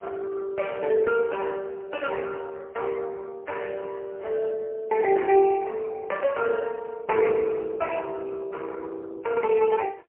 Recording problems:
telephone audio; 340 Hz to 3.1 kHz, AMR-NB, then MP3

